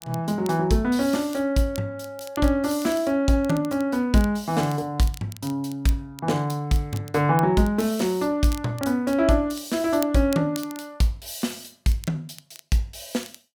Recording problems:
crackling; vinyl, SNR 20 dB

